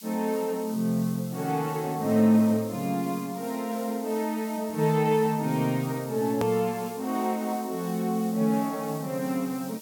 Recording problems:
background hiss; slope +6 dB per octave, SNR 17 dB
edit click; at 6.5 s

